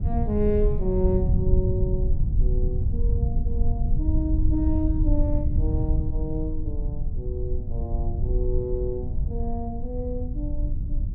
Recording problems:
low-frequency rumble; below 84 Hz, SNR -4 dB

